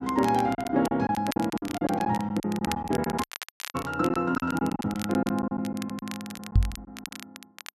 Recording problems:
crackling; vinyl, SNR 14 dB
packet loss; 15% of the sound replaced, filled with silence
audio cutting out; at 3 s for 0.5 s
knock on the microphone; at 6.5 s; peak +9 dB vs average level

